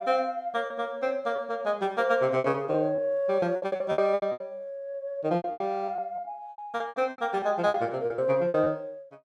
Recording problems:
packet loss; 15% of the sound replaced, filled with repeated pitch periods

